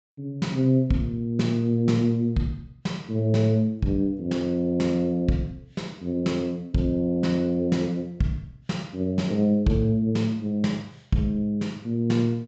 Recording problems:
treble cut off; nothing above 8 kHz

